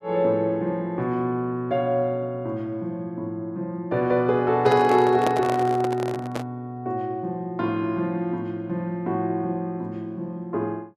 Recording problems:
handling noise; from 4.5 to 6.5 s; peak +3 dB vs average level

